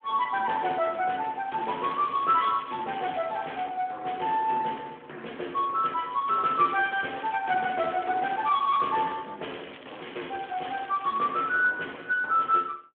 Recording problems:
telephone audio; 280 Hz to 3.3 kHz, Speex
crackle; from 1.5 to 3.5 s, from 6.5 to 9 s and from 9.5 to 11 s; loose cable, SNR 20 dB

